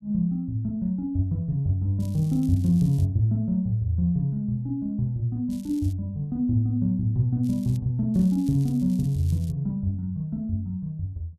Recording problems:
crackle; 4 times, first at 2 s; loose cable, SNR 26 dB

